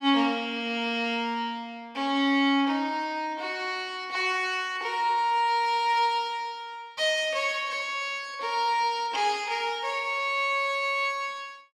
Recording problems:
none

